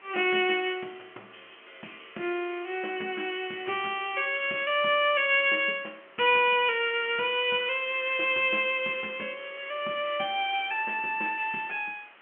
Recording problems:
telephone audio; 260 Hz to 3.2 kHz, G.711
hiss; SNR 27 dB

